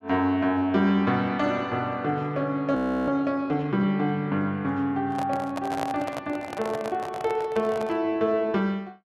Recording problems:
frozen audio; at 3 s
microphone handling noise; from 5 to 8 s; peak -1 dB vs average level

